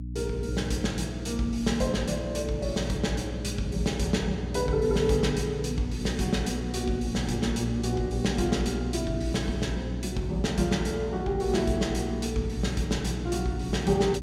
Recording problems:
electrical hum; 60 Hz, harmonics up to 300 Hz, SNR 7 dB

